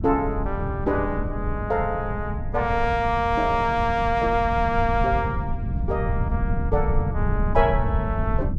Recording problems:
low-frequency rumble; below 120 Hz, SNR 4 dB

